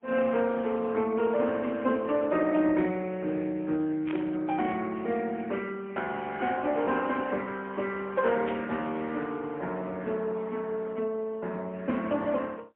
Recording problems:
telephone audio; 190 Hz to 3.2 kHz, AMR-NB, then MP3
static burst; at 4 s and at 8.5 s; peak -6 dB vs average level

